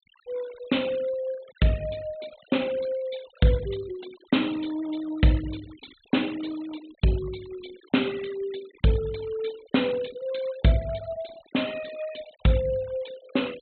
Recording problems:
treble missing; nothing above 4 kHz
noise reduction artefacts; signal-to-artefact ratio 19 dB

